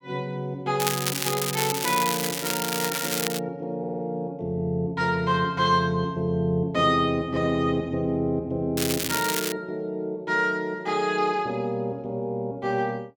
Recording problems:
crackling; from 1 to 3.5 s and at 9 s; loose cable, SNR 2 dB
stutter; at 4 s

